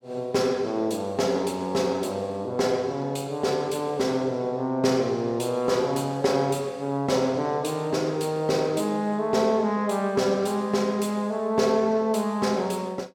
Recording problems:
none

